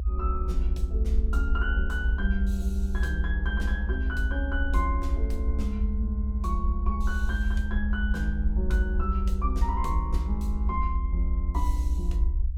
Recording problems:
low-frequency rumble; below 68 Hz, SNR -5 dB

